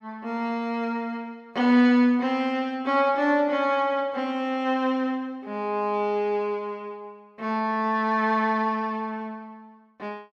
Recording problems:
none

